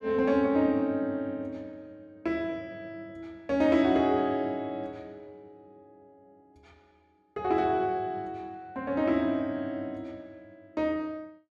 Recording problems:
none

